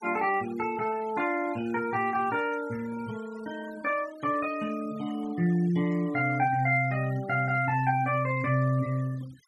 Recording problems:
noise reduction artefacts; signal-to-artefact ratio 20 dB

